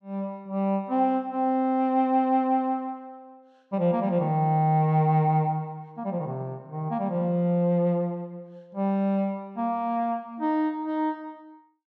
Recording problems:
none

